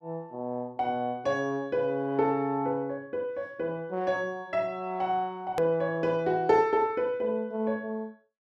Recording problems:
click at an edit; at 5.5 s

